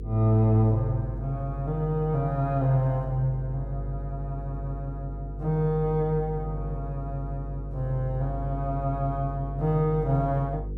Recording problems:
hum; 50 Hz, harmonics up to 500 Hz, SNR 8 dB

